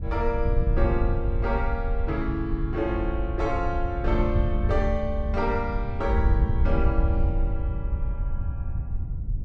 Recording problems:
wind noise; below 80 Hz, SNR -1 dB

